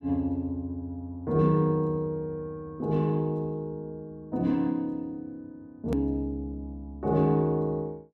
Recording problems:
edit click; at 6 s

